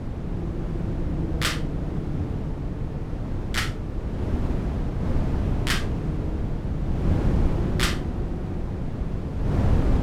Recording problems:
wind on the microphone; below 230 Hz, SNR -5 dB

